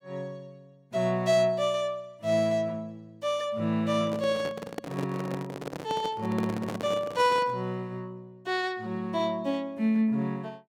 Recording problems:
microphone handling noise; from 4 to 7.5 s; peak -2 dB vs average level

